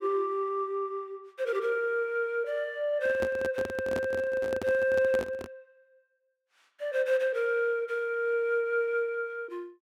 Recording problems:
microphone handling noise; from 3 to 5.5 s; peak -1 dB vs average level

